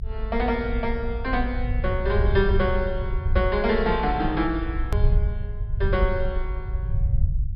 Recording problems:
treble cut off; nothing above 5.5 kHz
low-frequency rumble; below 80 Hz, SNR 1 dB
hard cut with a click; at 5 s

